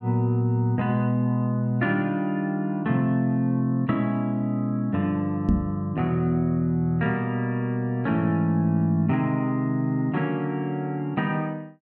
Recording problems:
microphone thump; at 5.5 s; peak +5 dB vs average level

